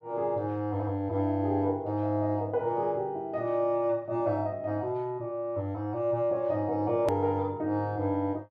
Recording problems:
click at an edit; at 7 s

